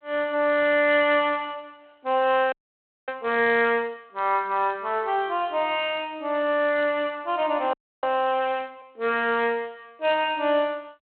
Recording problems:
telephone audio; 240 Hz to 3.4 kHz, G.726
frozen audio; at 2.5 s for 0.5 s and at 7.5 s

